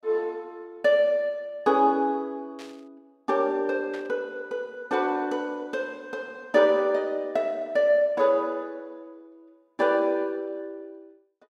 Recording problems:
static burst; at 2.5 s and at 4 s; peak -14 dB vs average level

